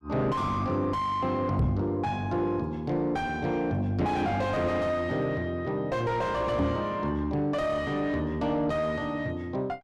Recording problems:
distorted audio; soft clipping, signal-to-distortion ratio 5 dB
microphone bump; at 1.5 s and at 6.5 s; peak +7 dB vs average level

